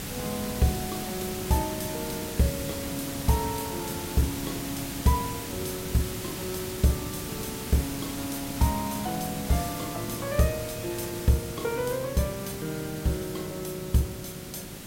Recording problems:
hum; 50 Hz, harmonics up to 750 Hz, SNR 19 dB
hiss; SNR 5 dB

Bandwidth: 16 kHz